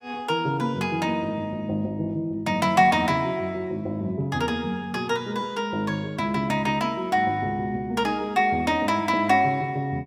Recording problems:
none

